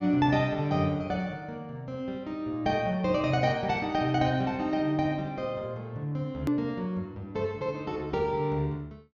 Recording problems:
treble missing; nothing above 6.9 kHz
edit click; at 6.5 s

